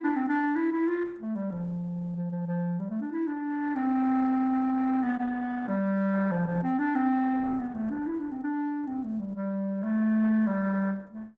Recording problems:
lossy codec; Opus, log-spectral distance 2 dB

